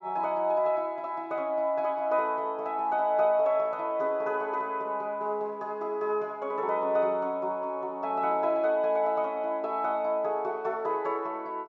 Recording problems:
treble cut off; nothing above 8 kHz

